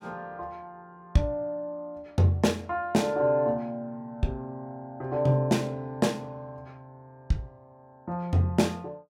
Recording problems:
none

